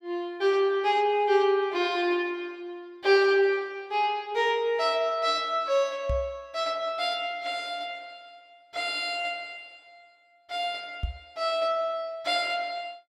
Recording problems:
knock on the microphone; at 6 s and at 11 s; peak 0 dB vs average level

